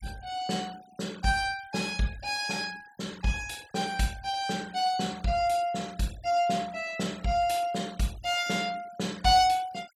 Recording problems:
denoising artefacts; signal-to-artefact ratio 22 dB

